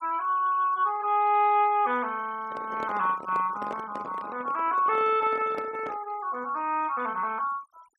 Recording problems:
denoising artefacts; signal-to-artefact ratio 26 dB
handling noise; from 2.5 to 6 s; peak -7 dB vs average level

